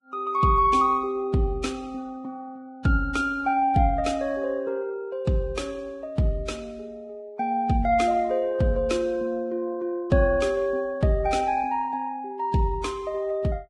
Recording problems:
lossy compression; Vorbis, log-spectral distance 2 dB, nothing above 10.4 kHz

